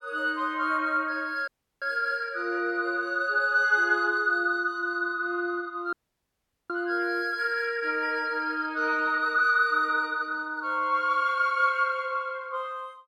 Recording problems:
audio cutting out; at 1.5 s and at 6 s for 1 s

